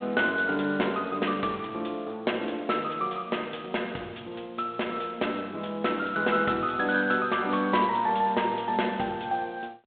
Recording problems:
telephone audio; 260 Hz to 3.5 kHz, G.726

